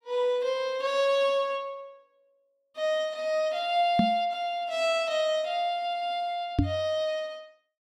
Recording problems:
microphone bump; at 4 s and at 6.5 s; peak +7 dB vs average level

